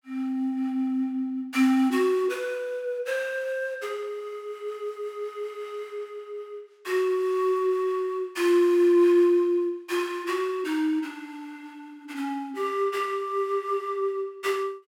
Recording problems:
none

